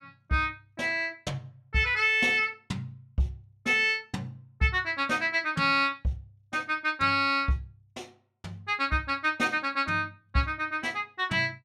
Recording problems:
none

